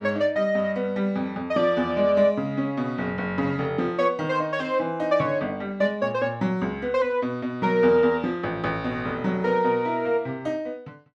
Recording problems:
none

